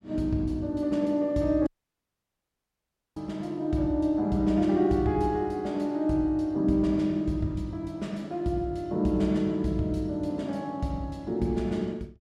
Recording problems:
dropout; at 1.5 s for 1.5 s

